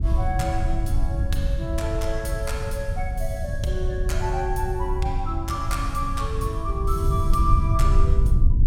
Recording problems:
low-frequency rumble; below 84 Hz, SNR -3 dB

